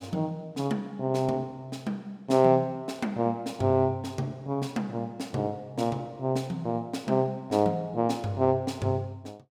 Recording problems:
none

